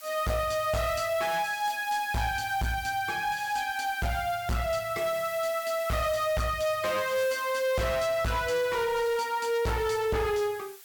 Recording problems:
distorted audio; hard clipping, signal-to-distortion ratio 8 dB
hiss; slope +3 dB per octave, SNR 17 dB

